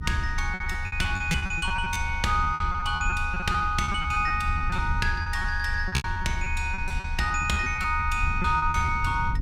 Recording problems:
rumble; below 76 Hz, strongest tone 26 Hz, SNR 6 dB
packet loss; 16% of the sound replaced, filled with repeated pitch periods

